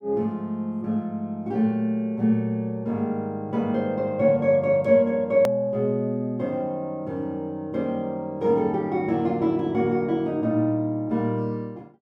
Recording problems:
hard cut with a click; at 5.5 s

